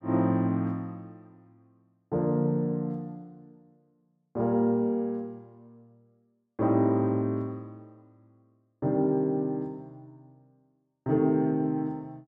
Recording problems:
none

